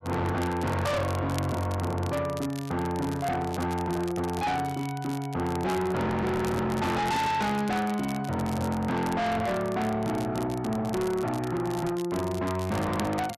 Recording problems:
distortion; soft clipping, signal-to-distortion ratio 6 dB
crackling; vinyl, SNR 17 dB
handling noise; from 3 to 5 s; peak -5 dB vs average level

